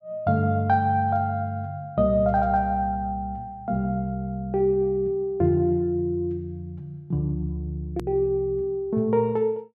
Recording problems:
click at an edit; at 8 s

